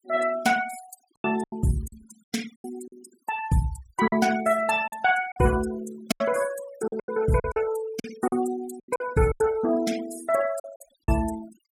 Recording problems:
denoising artefacts; signal-to-artefact ratio 15 dB
packet loss; 11% of the sound replaced, filled with silence

